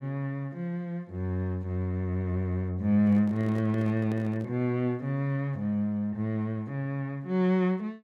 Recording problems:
microphone handling noise; from 3 to 4.5 s; peak -9 dB vs average level

